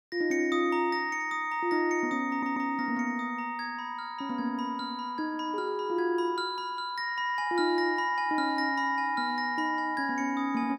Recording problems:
audio stuttering; at 2.5 s

